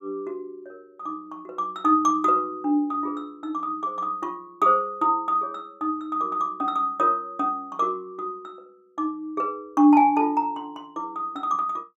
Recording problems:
none

